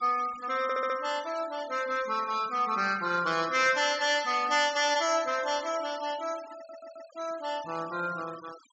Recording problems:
low-pass filter; nothing above 8 kHz
denoising artefacts; signal-to-artefact ratio 18 dB
stutter; at 0.5 s and at 6.5 s

